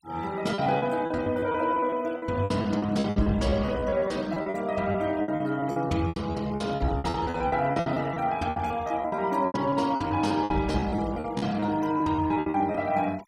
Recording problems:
noise reduction artefacts; signal-to-artefact ratio 22 dB
packet loss; 19% of the sound replaced, filled with repeated pitch periods

